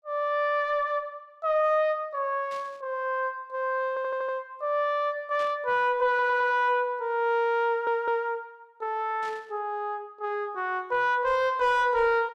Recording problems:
distorted audio; soft clipping, signal-to-distortion ratio 11 dB
burst of static; at 2.5 s, at 5.5 s and at 9 s; peak -14 dB vs average level
audio stuttering; at 4 s, at 6 s and at 7.5 s

